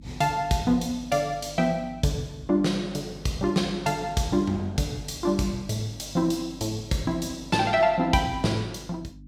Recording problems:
hum; 50 Hz, harmonics up to 300 Hz, SNR 20 dB

